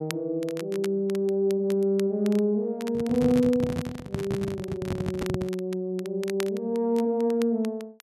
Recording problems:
crackle; vinyl, SNR 19 dB
handling noise; from 3 to 5.5 s; peak +1 dB vs average level

